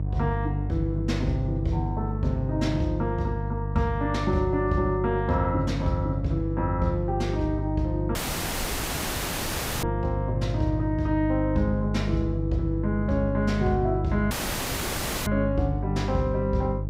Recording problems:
hum; 50 Hz, harmonics up to 500 Hz, SNR 2 dB
dropout; at 8 s for 1.5 s and at 14 s for 1 s

